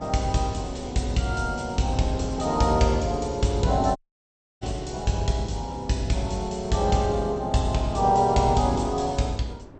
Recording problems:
lossy codec; MP2, log-spectral distance 4 dB, nothing above 8.5 kHz
wind noise; below 470 Hz, SNR 17 dB
dropout; at 4 s for 0.5 s

